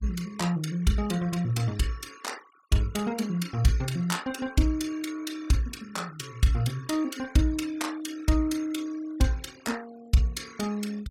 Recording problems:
noise reduction artefacts; signal-to-artefact ratio 19 dB

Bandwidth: 16.5 kHz